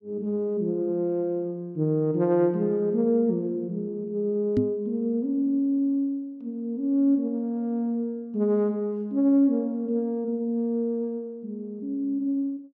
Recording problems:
microphone thump; at 4.5 s; peak +5 dB vs average level

